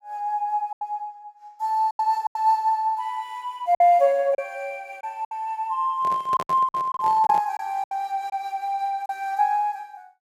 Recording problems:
lost packets; 7% of the sound replaced, filled with silence
microphone handling noise; from 6 to 7.5 s; peak -5 dB vs average level

